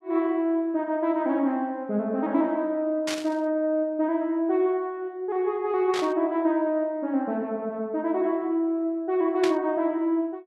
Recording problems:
burst of static; at 3 s, at 6 s and at 9.5 s; peak -2 dB vs average level

